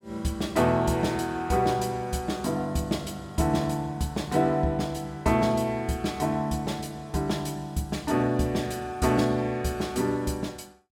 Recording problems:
none

